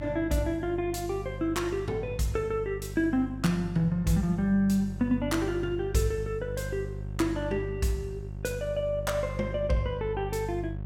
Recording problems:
hum; 50 Hz, harmonics up to 550 Hz, SNR 9 dB

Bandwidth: 17 kHz